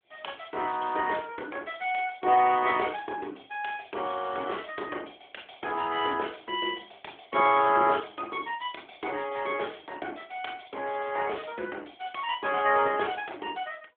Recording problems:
telephone audio; 300 Hz to 3.5 kHz, AMR-NB

